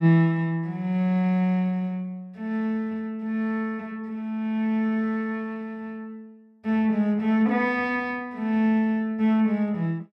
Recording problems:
none

